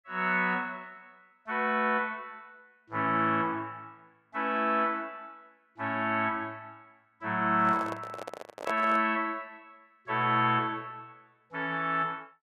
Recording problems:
handling noise; from 7.5 to 9 s; peak -3 dB vs average level

